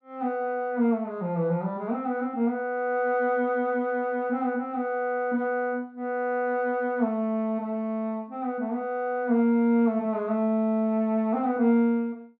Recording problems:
none

